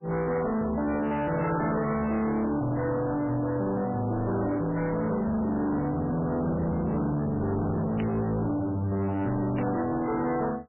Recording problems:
lossy codec; MP3, log-spectral distance 3 dB, nothing above 2.7 kHz
distorted audio; hard clipping, uneven, signal-to-distortion ratio 7 dB
static burst; at 8 s and at 9.5 s; peak -11 dB vs average level

